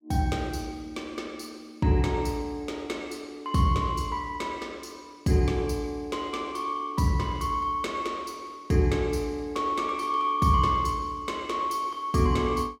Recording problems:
none

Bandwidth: 17 kHz